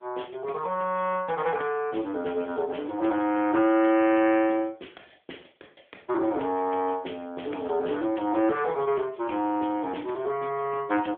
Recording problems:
telephone audio; 260 Hz to 3.3 kHz, AMR-NB

